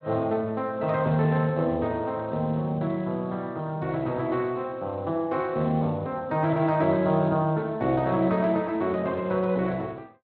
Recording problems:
lossy compression; Speex, log-spectral distance 2 dB

